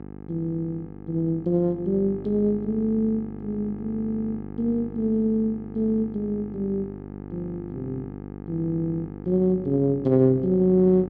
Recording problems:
hum; 50 Hz, harmonics up to 1.3 kHz, SNR 13 dB

